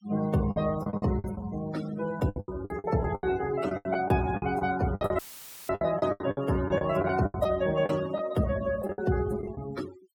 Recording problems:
noise reduction artefacts; signal-to-artefact ratio 16 dB
lost packets; 16% of the sound replaced, filled with the last packet
audio cutting out; at 5 s for 0.5 s; filled with static

